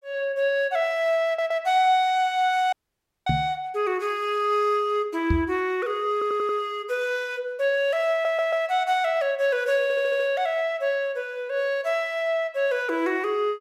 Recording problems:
stutter; 4 times, first at 1.5 s
dropout; at 2.5 s for 0.5 s
knock on the microphone; at 3.5 s and at 5.5 s; peak +3 dB vs average level

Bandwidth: 16 kHz